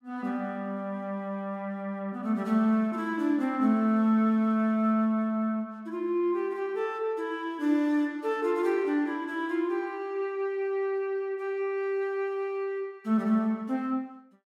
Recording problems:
none

